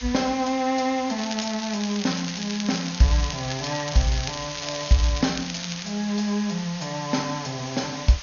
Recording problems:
treble cut off; nothing above 6.7 kHz
hiss; slope +2 dB per octave, SNR 10 dB
crackling; from 1 to 6 s; loose cable, SNR 9 dB

